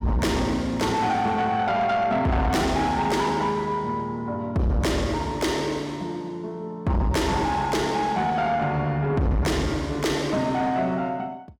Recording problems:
distortion; soft clipping, signal-to-distortion ratio 8 dB

